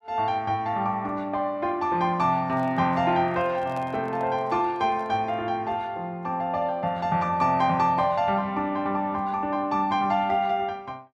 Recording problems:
microphone handling noise; from 2.5 to 5.5 s; peak -11 dB vs average level

